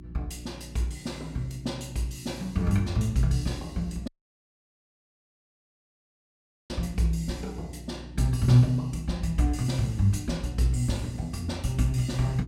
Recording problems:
electrical hum; 60 Hz, harmonics up to 360 Hz, SNR 16 dB
audio cutting out; at 4 s for 2.5 s

